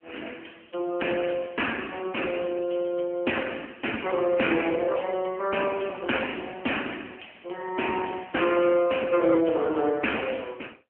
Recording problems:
phone line; 240 Hz to 3.2 kHz, AMR-NB

